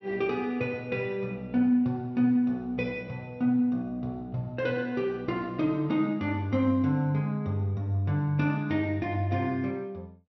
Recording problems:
treble missing; nothing above 5.8 kHz

